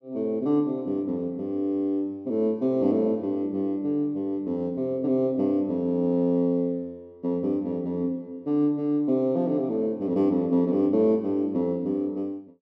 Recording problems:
none

